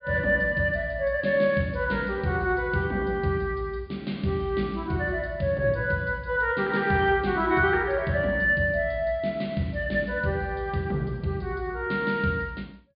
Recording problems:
treble missing; nothing above 4.8 kHz

